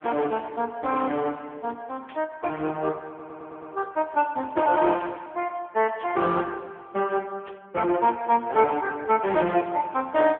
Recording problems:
telephone audio; 220 Hz to 3.4 kHz, AMR-NB
static burst; at 2 s, at 6 s and at 7.5 s; peak -16 dB vs average level
audio stuttering; at 3 s

